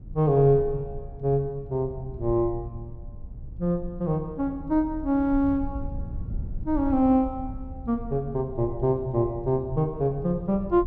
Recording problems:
rumble; below 86 Hz, SNR 13 dB

